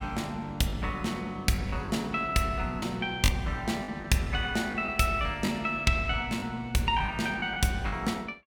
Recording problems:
lost packets; 5% of the sound replaced, filled with the last packet

